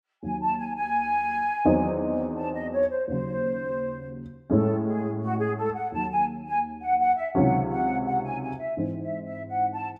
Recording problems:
none

